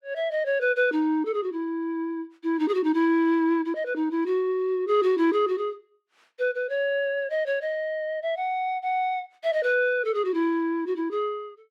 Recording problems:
none

